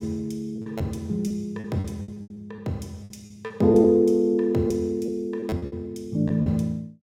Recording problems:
lost packets; 12% of the sound replaced, filled with repeated pitch periods

